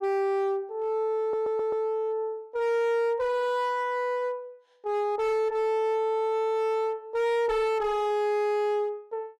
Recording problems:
distortion; hard clipping, uneven, signal-to-distortion ratio 10 dB
audio stuttering; at 1 s

